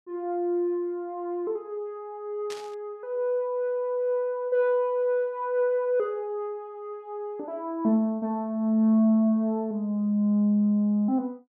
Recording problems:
burst of static; at 2.5 s; peak -10 dB vs average level

